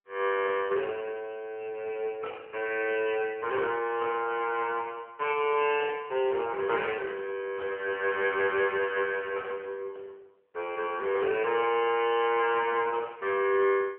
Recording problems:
telephone audio; 340 Hz to 3.2 kHz, AMR-NB

